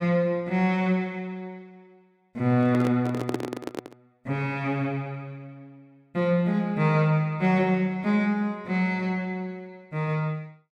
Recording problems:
handling noise; from 2.5 to 4 s; peak +1 dB vs average level

